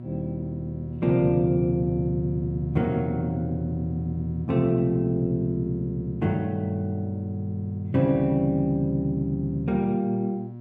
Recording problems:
hum; 60 Hz, harmonics up to 720 Hz, SNR 12 dB

